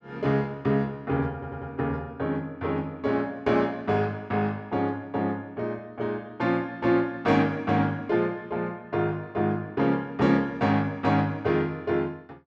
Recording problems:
audio stuttering; at 1.5 s

